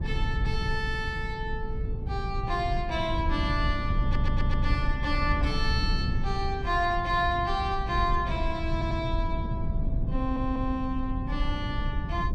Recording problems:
low-frequency rumble; below 110 Hz, SNR 1 dB
audio stuttering; at 4 s, at 8.5 s and at 10 s

